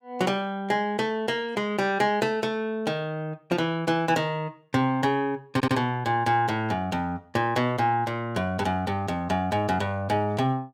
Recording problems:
audio stuttering; at 5.5 s

